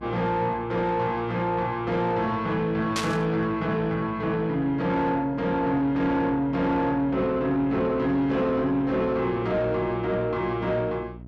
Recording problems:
distorted audio; soft clipping, signal-to-distortion ratio 11 dB
hum; 60 Hz, harmonics up to 720 Hz, SNR 19 dB
static burst; at 3 s; peak 0 dB vs average level

